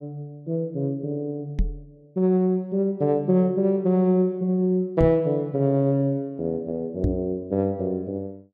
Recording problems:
microphone bump; at 1.5 s, at 5 s and at 7 s; peak +4 dB vs average level

